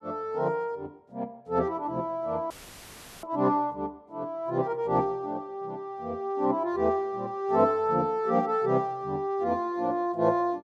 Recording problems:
dropout; at 2.5 s for 0.5 s; filled with static

